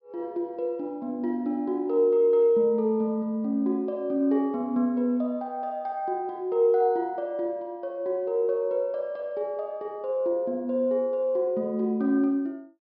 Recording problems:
low-pass filter; nothing above 5.5 kHz

